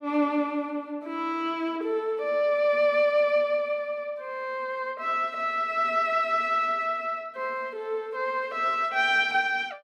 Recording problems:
none

